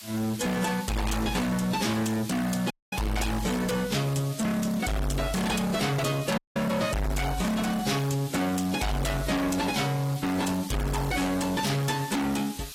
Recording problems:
lossy codec; AAC, log-spectral distance 5 dB, nothing above 15.1 kHz
distortion; hard clipping, signal-to-distortion ratio 6 dB
background hiss; slope +3 dB per octave, SNR 14 dB
dropout; at 2.5 s and at 6.5 s

